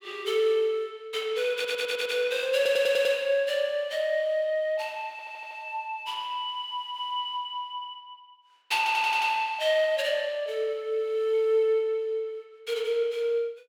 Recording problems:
audio stuttering; 4 times, first at 1.5 s

